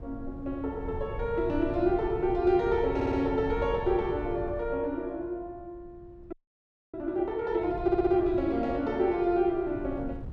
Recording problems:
wind on the microphone; below 130 Hz, SNR 12 dB
stutter; at 3 s and at 8 s
frozen audio; at 6.5 s for 0.5 s

